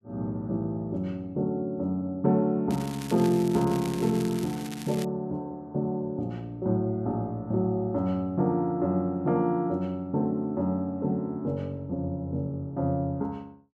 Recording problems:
crackle; from 2.5 to 5 s; loose cable, SNR 14 dB

